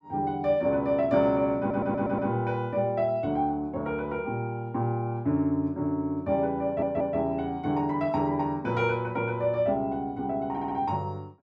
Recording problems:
stutter; at 1.5 s, at 6.5 s and at 11 s

